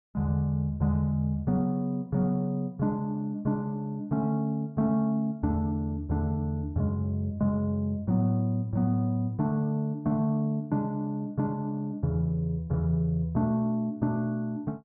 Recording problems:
low-pass filter; nothing above 3.3 kHz

